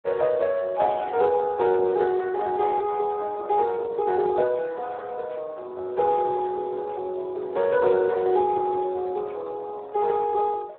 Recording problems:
telephone audio; 320 Hz to 2.9 kHz, Speex

